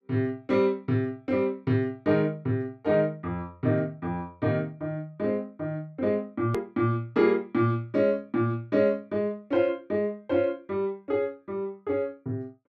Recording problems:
hard cut with a click; at 6.5 s

